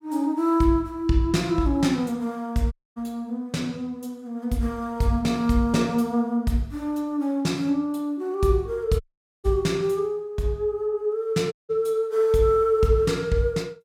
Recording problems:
audio cutting out; at 2.5 s, at 9 s and at 12 s

